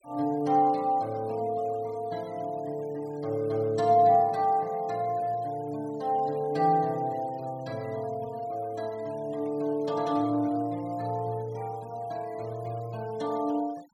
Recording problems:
denoising artefacts; signal-to-artefact ratio 26 dB

